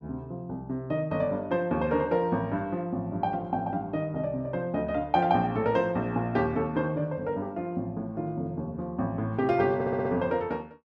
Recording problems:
audio stuttering; at 10 s

